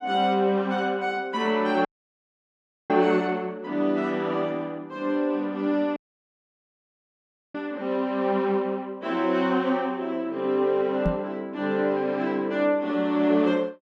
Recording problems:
audio cutting out; at 2 s for 1 s and at 6 s for 1.5 s
knock on the microphone; at 11 s; peak +2 dB vs average level

